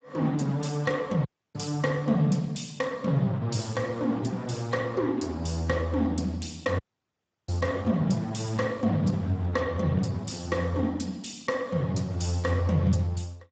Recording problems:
lossy compression; Speex, log-spectral distance 4 dB, nothing above 7.6 kHz
dropout; at 1.5 s and at 7 s for 0.5 s

